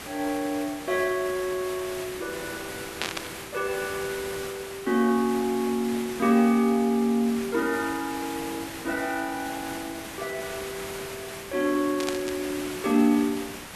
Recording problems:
background hiss; slope -3 dB per octave, SNR 10 dB
burst of static; at 3 s and at 12 s; peak +2 dB vs average level

